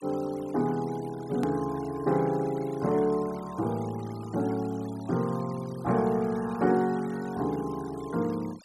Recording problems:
noise reduction artefacts; signal-to-artefact ratio 21 dB
hard cut with a click; at 1.5 s

